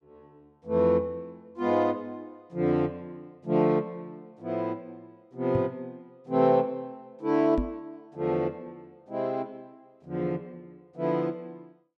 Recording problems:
knock on the microphone; at 5.5 s and at 7.5 s; peak +2 dB vs average level

